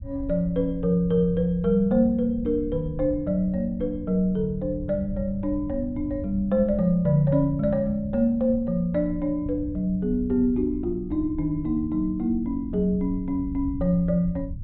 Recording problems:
low-pass filter; nothing above 4 kHz
low-frequency rumble; below 110 Hz, SNR 13 dB

